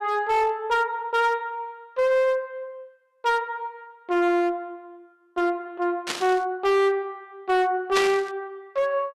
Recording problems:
distorted audio; hard clipping, signal-to-distortion ratio 10 dB
burst of static; at 6 s and at 8 s; peak +2 dB vs average level

